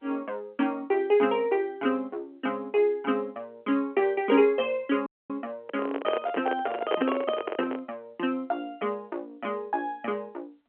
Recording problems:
telephone audio; 240 Hz to 3.3 kHz, G.711
audio cutting out; at 5 s
handling noise; from 5.5 to 8 s; peak +5 dB vs average level

